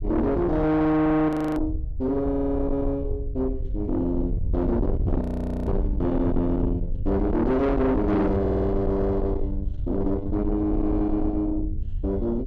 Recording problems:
distorted audio; soft clipping, signal-to-distortion ratio 8 dB
rumble; below 110 Hz, SNR 5 dB
audio freezing; at 1.5 s and at 5 s
stutter; at 2.5 s and at 8.5 s

